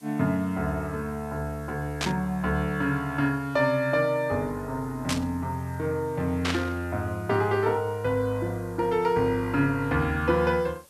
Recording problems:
hiss; SNR 27 dB
burst of static; at 2 s, at 5 s and at 6.5 s; peak +2 dB vs average level

